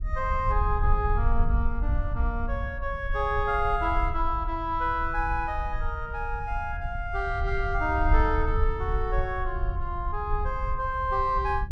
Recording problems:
wind noise; below 64 Hz, SNR 2 dB

